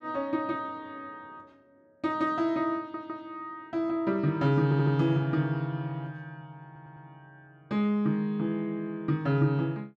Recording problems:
audio stuttering; at 3 s, at 4.5 s and at 6.5 s

